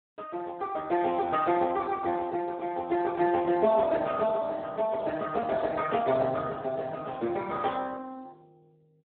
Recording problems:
telephone audio; 280 Hz to 2.1 kHz, Speex

